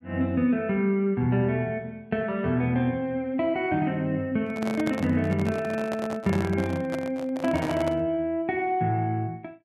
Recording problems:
microphone handling noise; from 4.5 to 8 s; peak -2 dB vs average level

